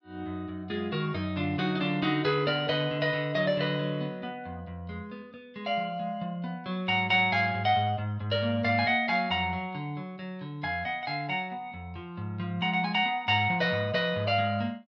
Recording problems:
none

